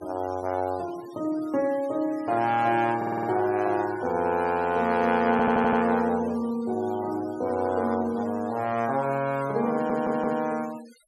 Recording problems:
denoising artefacts; signal-to-artefact ratio 21 dB
audio stuttering; at 3 s, at 5.5 s and at 9.5 s

